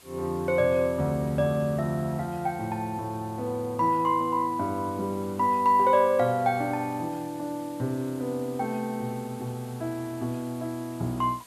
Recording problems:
background hiss; slope -1 dB per octave, SNR 23 dB

